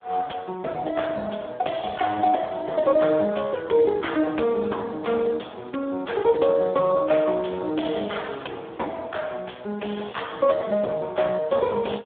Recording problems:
phone line; 240 Hz to 3.6 kHz, Speex

